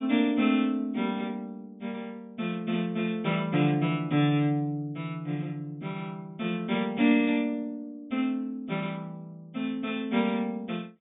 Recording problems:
treble missing; nothing above 4 kHz

